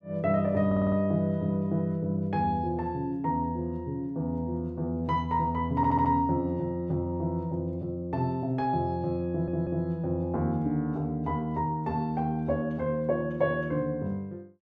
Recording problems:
stutter; at 0.5 s, at 6 s and at 9.5 s

